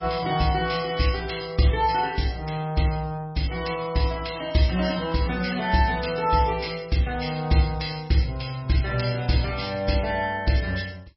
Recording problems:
codec artefacts; MP3, log-spectral distance 8 dB, nothing above 5.5 kHz

